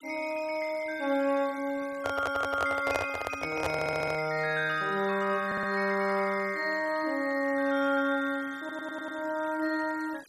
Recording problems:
noise reduction artefacts; signal-to-artefact ratio 21 dB
microphone handling noise; from 2 to 4 s; peak +3 dB vs average level
audio stuttering; 4 times, first at 2 s

